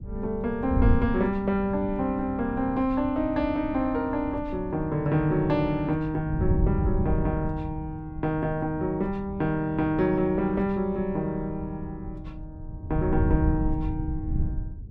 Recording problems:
wind noise; below 120 Hz, SNR 6 dB

